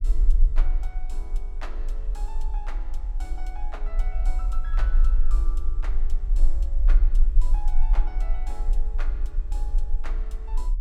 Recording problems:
low-frequency rumble; below 36 Hz, strongest tone 20 Hz, SNR -17 dB

